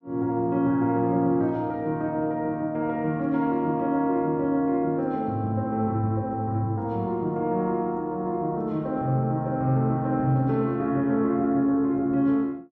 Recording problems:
none

